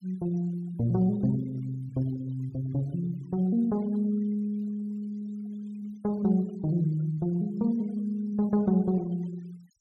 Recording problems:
denoising artefacts; signal-to-artefact ratio 28 dB

